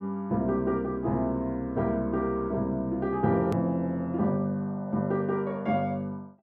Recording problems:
click at an edit; at 3.5 s

